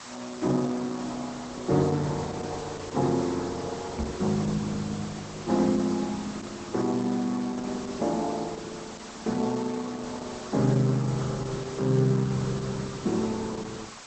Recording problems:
codec artefacts; Opus, log-spectral distance 9 dB
background hiss; SNR 14 dB
knock on the microphone; at 4 s; peak +2 dB vs average level

